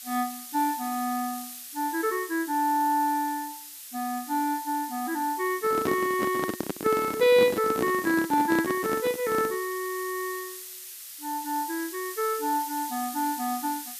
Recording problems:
hiss; slope +5 dB per octave, SNR 11 dB
microphone handling noise; from 5.5 to 9.5 s; peak +2 dB vs average level

